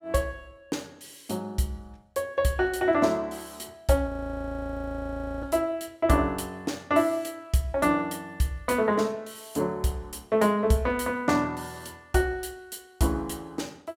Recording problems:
audio freezing; at 4 s for 1.5 s

